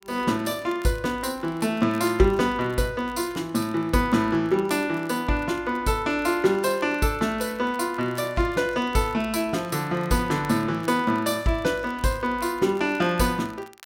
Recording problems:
crackling; vinyl, SNR 26 dB

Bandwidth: 16.5 kHz